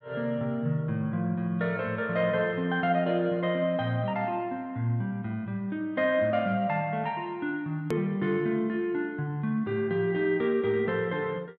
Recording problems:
hard cut with a click; at 8 s

